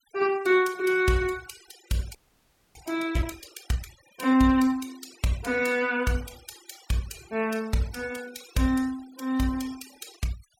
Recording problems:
noise reduction artefacts; signal-to-artefact ratio 20 dB
audio freezing; at 2 s for 0.5 s

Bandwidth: 17 kHz